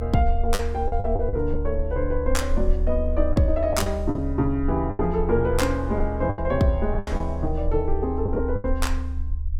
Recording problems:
low-frequency rumble; below 72 Hz, SNR 4 dB
packet loss; 8% of the sound replaced, filled with the last packet

